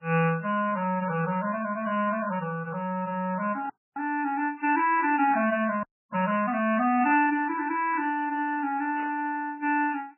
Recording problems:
codec artefacts; AAC, then MP3, log-spectral distance 3 dB, nothing above 2.7 kHz
burst of static; 4 times, first at 2 s; peak -12 dB vs average level
audio freezing; at 3.5 s and at 6 s

